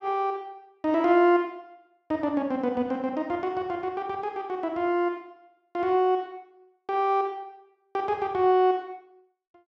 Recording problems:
none

